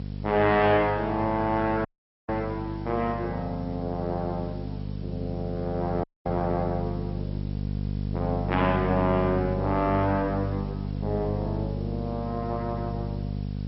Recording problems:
lossy compression; MP2, log-spectral distance 3 dB, nothing above 5.3 kHz
electrical hum; 50 Hz, harmonics up to 500 Hz, SNR 5 dB
hiss; slope 0 dB per octave, SNR 28 dB
audio cutting out; at 2 s and at 6 s

